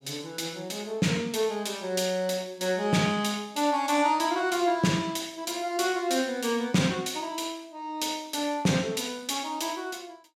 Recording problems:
none

